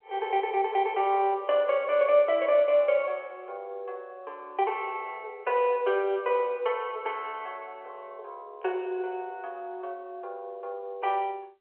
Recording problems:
phone line; 340 Hz to 3.3 kHz, G.711

